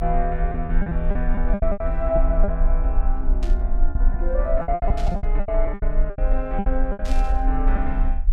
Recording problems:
rumble; below 42 Hz, strongest tone 26 Hz, SNR -3 dB
lost packets; 13% of the sound replaced, filled with repeated pitch periods
burst of static; at 3.5 s, at 5 s and at 7 s; peak -7 dB vs average level

